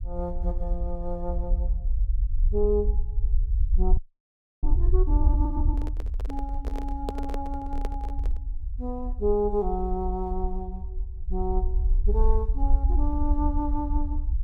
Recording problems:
low-frequency rumble; below 56 Hz, SNR -3 dB
frozen audio; at 4 s for 0.5 s
microphone handling noise; from 5.5 to 8.5 s; peak +3 dB vs average level

